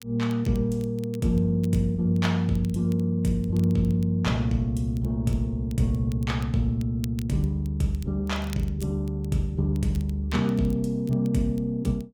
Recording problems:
crackle; vinyl, SNR 26 dB

